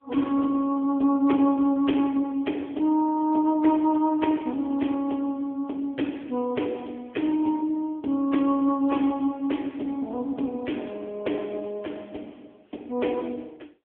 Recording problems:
telephone audio; 220 Hz to 3.6 kHz, AMR-NB

